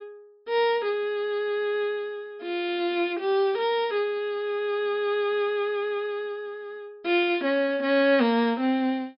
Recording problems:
treble missing; nothing above 5.5 kHz

